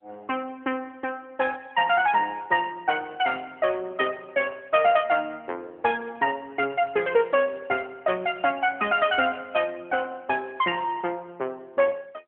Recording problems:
telephone audio; 280 Hz to 3.3 kHz, AMR-NB

